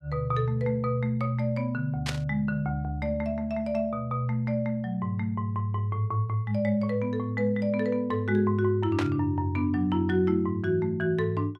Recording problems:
burst of static; at 2 s and at 9 s; peak 0 dB vs average level

